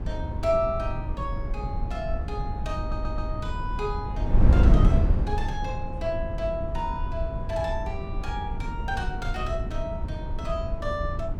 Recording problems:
wind on the microphone; below 110 Hz, SNR -3 dB
stutter; at 3 s

